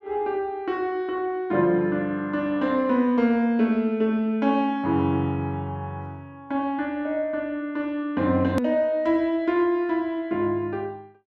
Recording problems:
edit click; at 8.5 s

